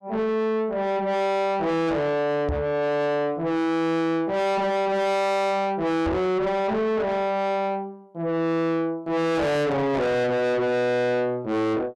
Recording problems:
distorted audio; soft clipping, signal-to-distortion ratio 6 dB
microphone bump; at 2.5 s and at 6 s; peak +2 dB vs average level

